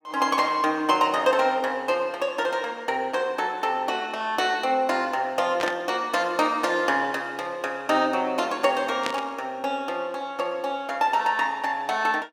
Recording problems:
static burst; at 5.5 s and at 9 s; peak 0 dB vs average level

